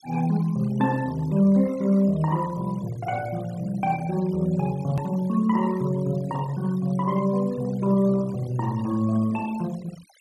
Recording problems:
denoising artefacts; signal-to-artefact ratio 22 dB
click at an edit; at 5 s

